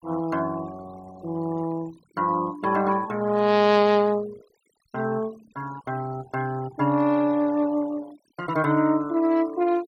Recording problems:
noise reduction artefacts; signal-to-artefact ratio 21 dB

